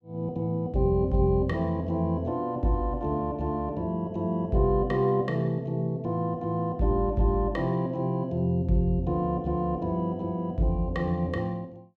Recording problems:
none

